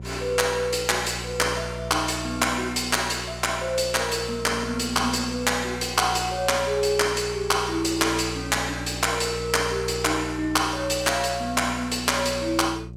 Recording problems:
electrical hum; 60 Hz, harmonics up to 600 Hz, SNR 13 dB

